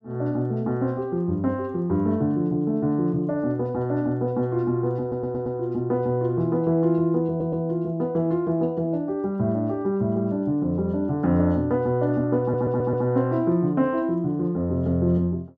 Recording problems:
stutter; at 5 s, at 7.5 s and at 12 s

